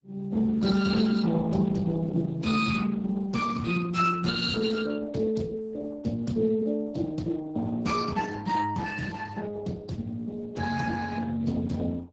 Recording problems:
lossy compression; Speex, then Opus, log-spectral distance 4 dB, nothing above 7.6 kHz

